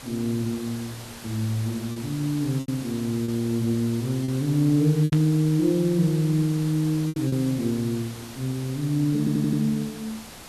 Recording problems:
hiss; slope -2 dB per octave, SNR 15 dB
lost packets; 4% of the sound replaced, filled with repeated pitch periods
static burst; at 5 s; peak -7 dB vs average level
audio stuttering; at 9 s

